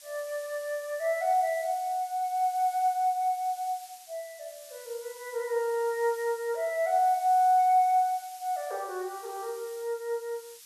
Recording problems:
hiss; SNR 19 dB

